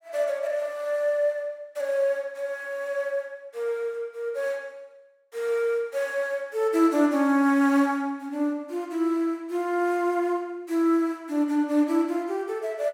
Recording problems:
none

